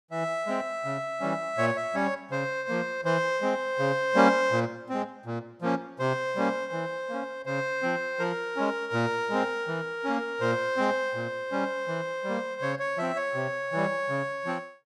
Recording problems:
none

